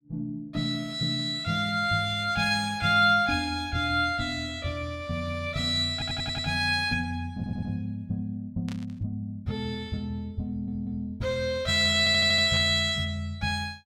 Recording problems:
stutter; 4 times, first at 6 s
burst of static; at 8.5 s and at 13 s; peak -11 dB vs average level

